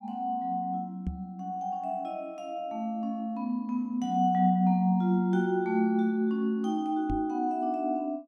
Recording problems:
knock on the microphone; at 1 s and at 7 s; peak -2 dB vs average level

